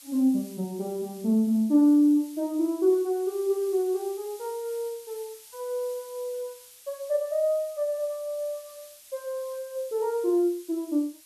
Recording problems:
background hiss; slope +4 dB per octave, SNR 21 dB

